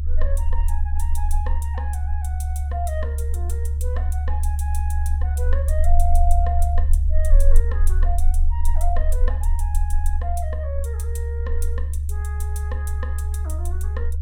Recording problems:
low-frequency rumble; below 72 Hz, strongest tone 20 Hz, SNR -11 dB

